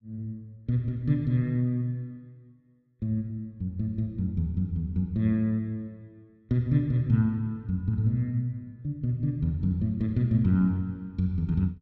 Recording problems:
none

